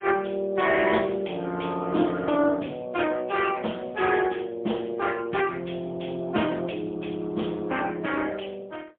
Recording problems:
phone line; 110 Hz to 3.4 kHz, AMR-NB, then MP3

